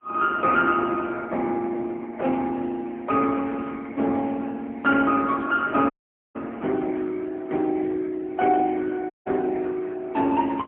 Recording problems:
phone line; 220 Hz to 3.8 kHz, AMR-NB, then MP3
dropout; at 6 s and at 9 s

